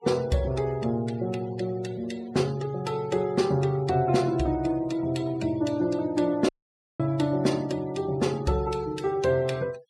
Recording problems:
noise reduction artefacts; signal-to-artefact ratio 21 dB
dropout; at 6.5 s for 0.5 s

